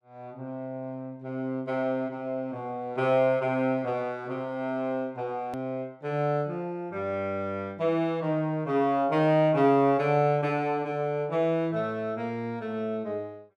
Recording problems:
edit click; at 5.5 s

